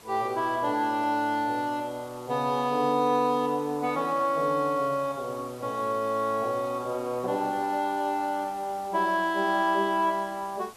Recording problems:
hiss; SNR 22 dB

